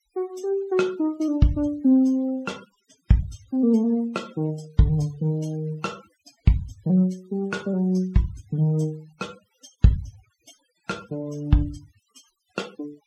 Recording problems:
noise reduction artefacts; signal-to-artefact ratio 27 dB

